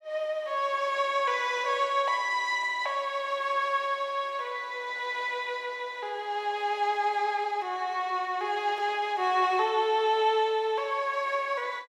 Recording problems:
none

